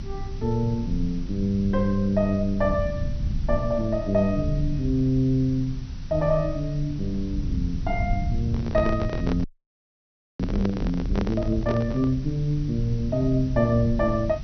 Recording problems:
treble missing; nothing above 6.1 kHz
hiss; slope -1 dB per octave, SNR 25 dB
rumble; below 110 Hz, SNR 7 dB
microphone handling noise; from 8.5 to 12 s; peak 0 dB vs average level
audio freezing; at 9.5 s for 1 s

